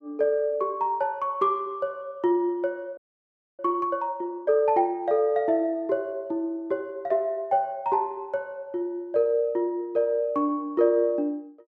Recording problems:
audio freezing; at 3 s for 0.5 s

